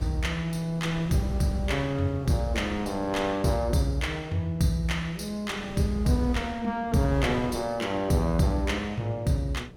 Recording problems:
hum; 60 Hz, harmonics up to 480 Hz, SNR 25 dB
wind on the microphone; below 380 Hz, SNR 15 dB

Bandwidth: 17 kHz